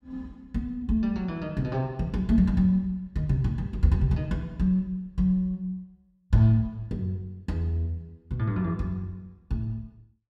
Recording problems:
none

